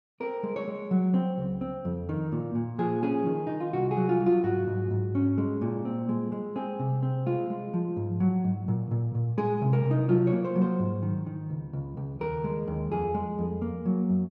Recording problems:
none

